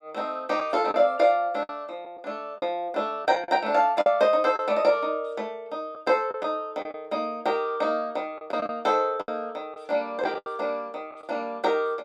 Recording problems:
lost packets; 6% of the sound replaced, filled with the last packet

